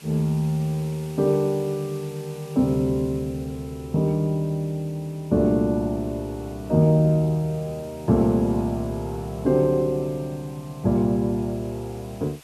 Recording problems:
hiss; SNR 24 dB

